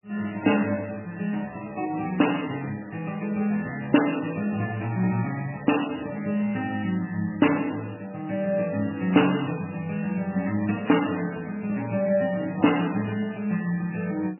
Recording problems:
codec artefacts; MP3, log-spectral distance 7 dB, nothing above 2.9 kHz

